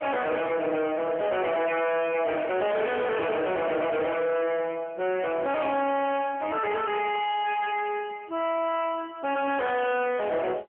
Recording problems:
phone line; 220 Hz to 3.2 kHz, AMR-NB
distorted audio; soft clipping, signal-to-distortion ratio 6 dB

